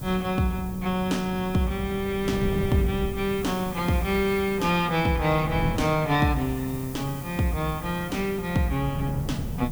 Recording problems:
hiss; slope +5 dB per octave, SNR 17 dB
wind noise; below 190 Hz, SNR 9 dB

